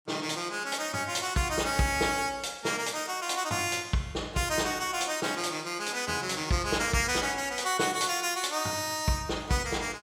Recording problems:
none

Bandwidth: 17.5 kHz